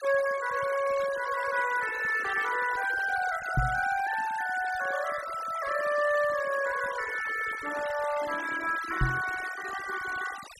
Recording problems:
denoising artefacts; signal-to-artefact ratio 12 dB
microphone thump; at 3.5 s and at 9 s; peak +5 dB vs average level

